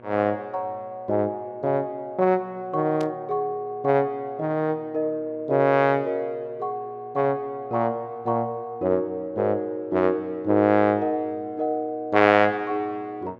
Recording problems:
hum; 60 Hz, harmonics up to 2.2 kHz, SNR 25 dB
burst of static; at 3 s; peak -13 dB vs average level

